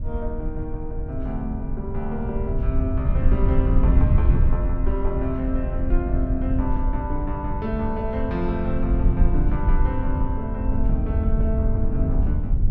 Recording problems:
rumble; below 74 Hz, SNR -4 dB

